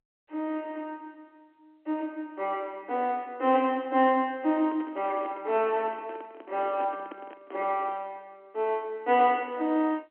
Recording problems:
telephone audio; 240 Hz to 3.3 kHz, G.711
microphone handling noise; from 4.5 to 8 s; peak -9 dB vs average level

